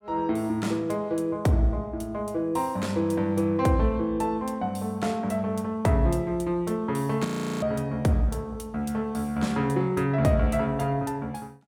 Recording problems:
audio freezing; at 7.5 s

